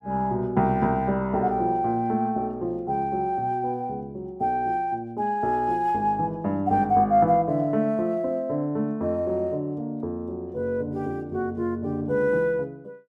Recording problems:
none

